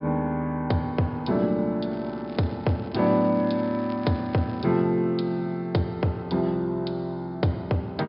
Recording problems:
treble missing; nothing above 5.5 kHz
crackle; from 2 to 4.5 s; loose cable, SNR 27 dB

